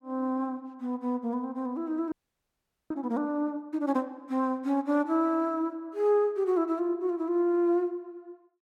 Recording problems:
frozen audio; at 2 s for 1 s

